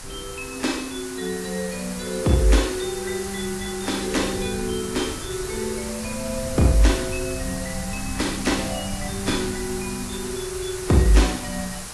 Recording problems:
lossy codec; AAC, log-spectral distance 12 dB
hiss; SNR 8 dB
wind on the microphone; below 120 Hz, SNR 14 dB

